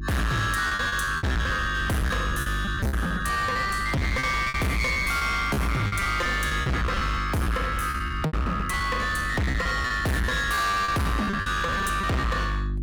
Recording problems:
distorted audio; hard clipping, signal-to-distortion ratio 6 dB
hum; 50 Hz, harmonics up to 350 Hz, SNR 8 dB
lost packets; 18% of the sound replaced, filled with repeated pitch periods

